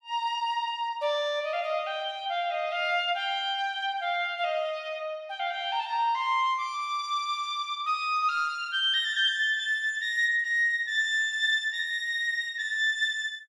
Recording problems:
none

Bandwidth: 12 kHz